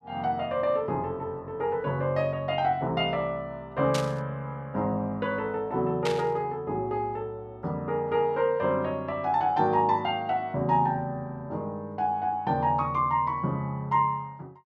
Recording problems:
static burst; at 4 s and at 6 s; peak 0 dB vs average level

